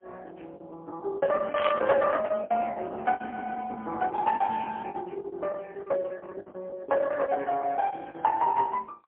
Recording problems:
telephone audio; 320 Hz to 2.4 kHz, AMR-NB, then MP3
packet loss; 17% of the sound replaced, filled with the last packet
static burst; at 1.5 s; peak -1 dB vs average level

